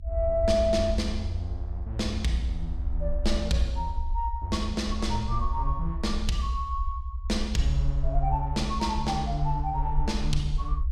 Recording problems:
rumble; below 66 Hz, SNR 3 dB

